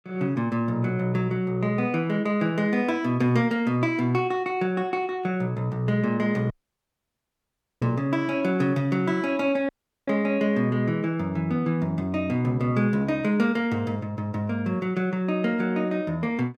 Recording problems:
audio cutting out; at 6.5 s for 1.5 s and at 9.5 s

